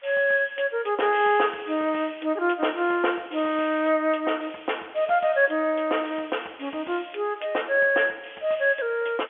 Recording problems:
telephone audio; 320 Hz to 3.3 kHz, G.711
hiss; SNR 27 dB

